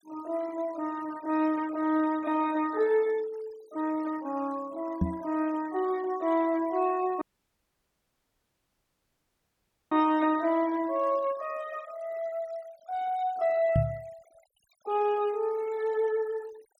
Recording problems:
denoising artefacts; signal-to-artefact ratio 23 dB
knock on the microphone; at 5 s and at 14 s; peak +6 dB vs average level
dropout; at 7 s for 2.5 s

